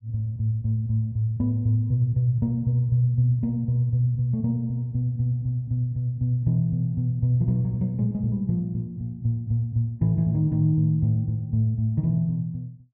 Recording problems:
none

